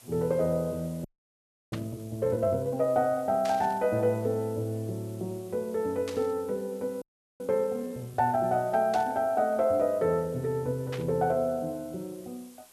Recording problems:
hiss; SNR 25 dB
frozen audio; at 1 s for 0.5 s and at 7 s
static burst; 5 times, first at 1.5 s; peak -7 dB vs average level

